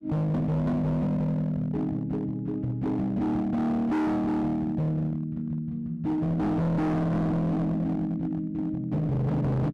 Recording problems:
distorted audio; hard clipping, signal-to-distortion ratio 6 dB

